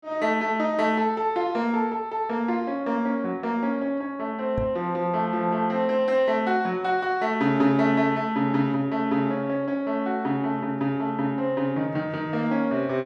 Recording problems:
knock on the microphone; at 4.5 s; peak -3 dB vs average level

